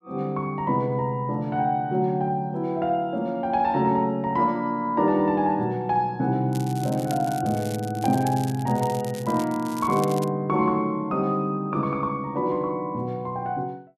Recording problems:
crackle; from 6.5 to 10 s; loose cable, SNR 17 dB

